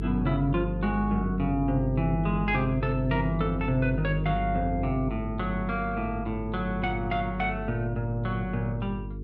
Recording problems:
electrical hum; 50 Hz, harmonics up to 450 Hz, SNR 6 dB

